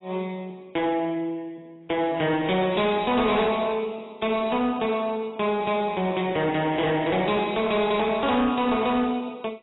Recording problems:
codec artefacts; AAC, log-spectral distance 3 dB, nothing above 3.9 kHz
distortion; soft clipping, signal-to-distortion ratio 10 dB

